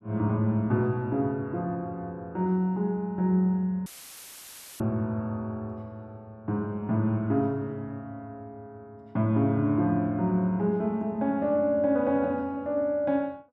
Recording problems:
dropout; at 4 s for 1 s; filled with static

